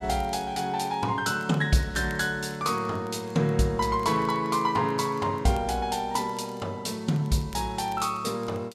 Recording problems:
crackling; vinyl, SNR 28 dB

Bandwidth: 14.5 kHz